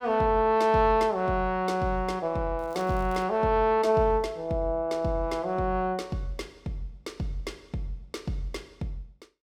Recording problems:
crackle; at 2.5 s; loose cable, SNR 29 dB

